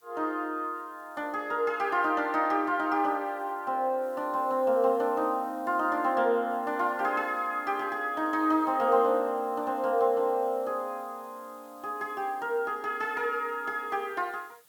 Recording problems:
hiss; slope 0 dB per octave, SNR 29 dB

